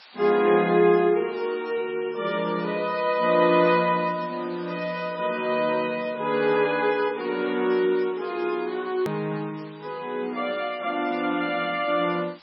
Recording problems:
lossy codec; MP3, log-spectral distance 9 dB
hiss; SNR 23 dB
click at an edit; at 9 s

